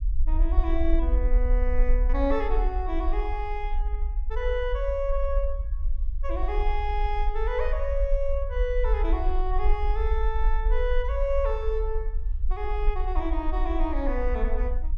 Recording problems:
rumble; below 46 Hz, SNR -2 dB

